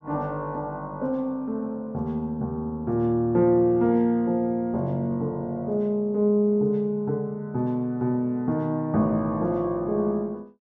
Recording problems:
none

